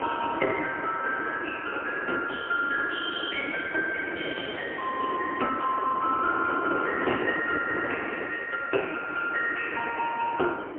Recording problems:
telephone audio; 280 Hz to 2.6 kHz, AMR-NB, then MP3
wind noise; below 800 Hz, SNR 6 dB

